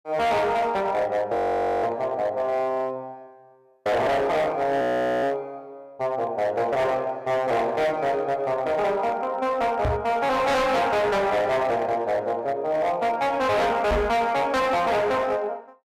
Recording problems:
distorted audio; hard clipping, uneven, signal-to-distortion ratio 7 dB
audio freezing; at 1.5 s and at 5 s
microphone thump; at 10 s and at 14 s; peak +3 dB vs average level

